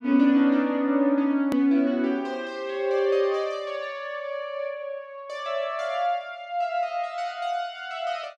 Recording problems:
click at an edit; at 1.5 s

